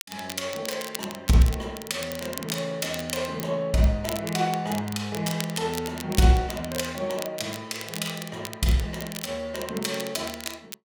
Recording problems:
crackling; vinyl, SNR 11 dB

